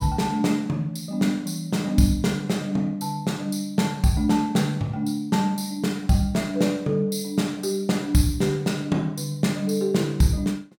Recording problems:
none

